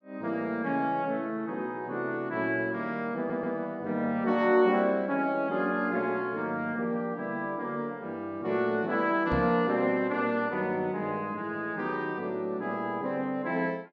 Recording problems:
stutter; at 3 s
knock on the microphone; at 9.5 s; peak +2 dB vs average level

